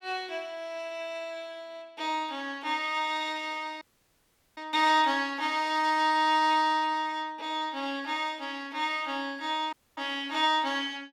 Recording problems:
dropout; at 4 s for 1 s and at 9.5 s

